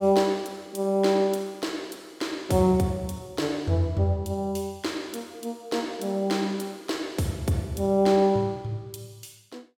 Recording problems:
none

